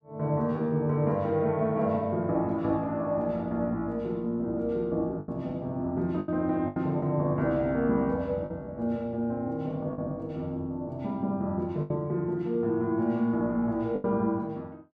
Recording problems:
lost packets; 3% of the sound replaced, filled with the last packet

